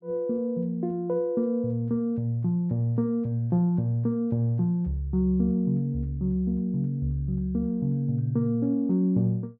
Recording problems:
none

